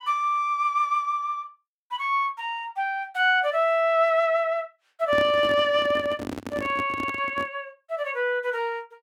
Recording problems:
microphone handling noise; from 5 to 7.5 s; peak -4 dB vs average level

